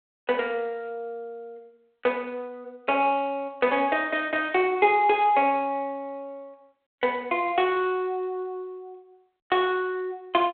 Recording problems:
phone line; 300 Hz to 3.4 kHz, G.726

